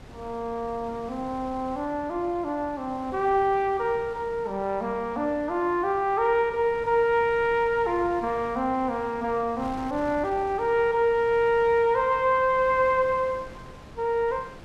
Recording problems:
wind on the microphone; below 860 Hz, SNR 20 dB

